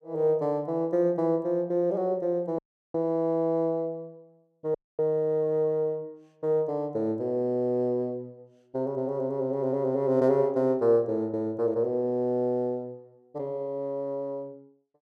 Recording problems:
audio cutting out; at 2.5 s and at 5 s

